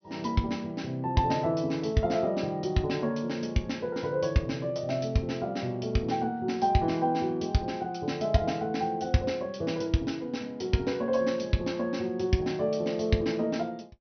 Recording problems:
treble cut off; nothing above 6.1 kHz

